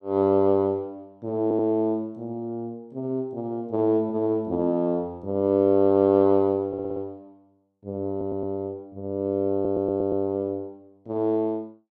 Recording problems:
stutter; 4 times, first at 1.5 s

